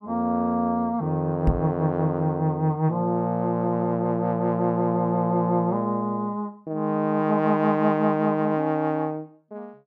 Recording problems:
microphone bump; at 1.5 s; peak +5 dB vs average level

